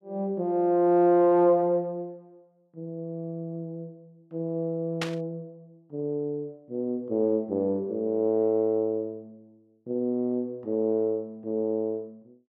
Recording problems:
static burst; at 5 s; peak 0 dB vs average level

